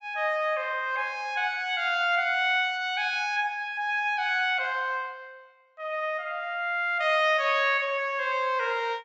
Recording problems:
treble missing; nothing above 8 kHz

